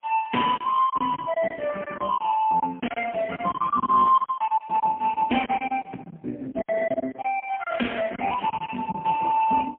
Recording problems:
phone line; 220 Hz to 3 kHz, AMR-NB, then MP3
packet loss; 10% of the sound replaced, filled with silence

